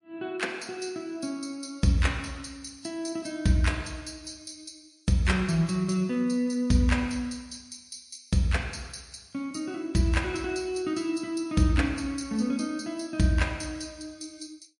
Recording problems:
lossy codec; MP3, log-spectral distance 5 dB, nothing above 10.1 kHz

